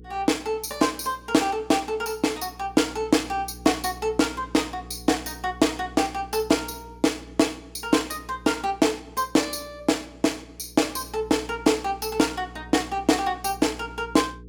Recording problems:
electrical hum; 60 Hz, harmonics up to 480 Hz, SNR 20 dB

